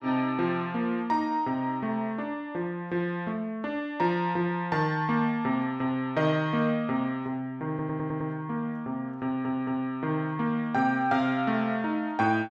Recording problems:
audio stuttering; at 7.5 s and at 9 s

